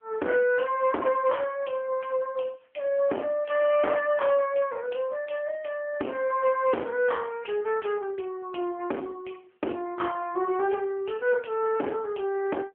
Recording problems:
phone line; 260 Hz to 2.7 kHz, AMR-NB
distorted audio; soft clipping, signal-to-distortion ratio 9 dB

